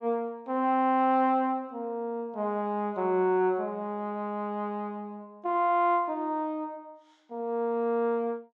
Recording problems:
none

